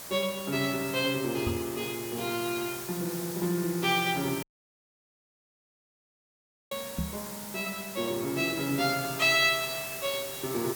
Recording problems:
hiss; slope -2 dB per octave, SNR 9 dB
microphone bump; at 1.5 s and at 7 s; peak +1 dB vs average level
dropout; at 4.5 s for 2.5 s

